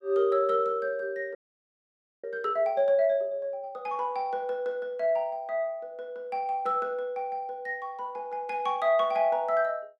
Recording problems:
frozen audio; at 1.5 s for 1 s

